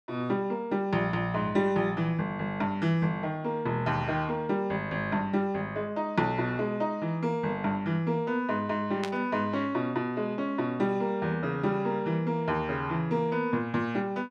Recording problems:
burst of static; at 9 s; peak -2 dB vs average level

